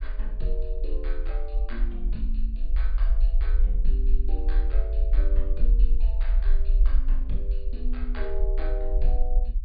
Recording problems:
treble cut off; nothing above 4.8 kHz
low-frequency rumble; below 42 Hz, SNR -13 dB

